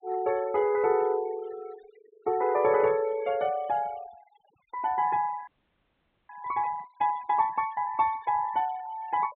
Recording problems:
treble cut off; nothing above 4 kHz
noise reduction artefacts; signal-to-artefact ratio 22 dB
audio freezing; at 5.5 s for 1 s

